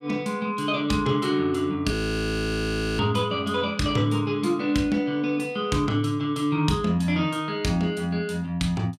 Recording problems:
frozen audio; at 2 s for 1 s

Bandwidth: 15.5 kHz